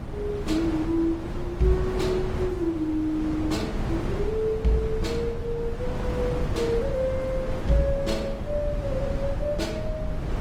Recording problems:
lossy codec; Opus, log-spectral distance 2 dB, nothing above 19 kHz
low-frequency rumble; below 82 Hz, SNR 11 dB
wind on the microphone; below 400 Hz, SNR 6 dB

